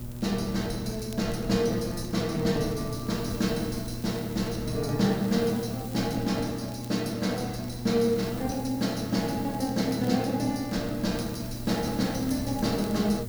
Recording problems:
hum; 60 Hz, harmonics up to 840 Hz, SNR 10 dB
hiss; slope +1 dB per octave, SNR 17 dB
wind noise; below 120 Hz, SNR 16 dB
crackle; vinyl, SNR 25 dB

